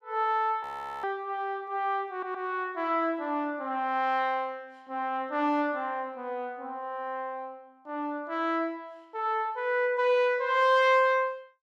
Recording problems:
frozen audio; at 0.5 s
stutter; at 2 s

